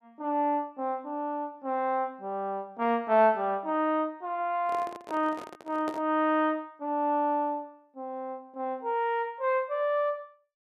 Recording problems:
microphone handling noise; from 4.5 to 6 s; peak -5 dB vs average level

